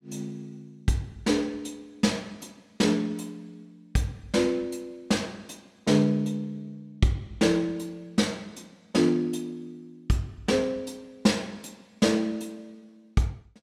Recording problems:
none

